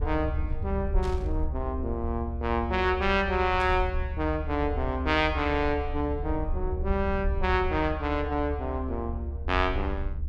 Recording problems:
rumble; below 72 Hz, SNR 4 dB
static burst; at 1 s and at 3.5 s; peak -11 dB vs average level

